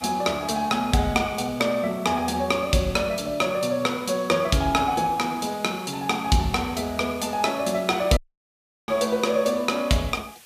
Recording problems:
background hiss; slope +1 dB per octave, SNR 23 dB
audio cutting out; at 8 s for 0.5 s

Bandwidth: 14.5 kHz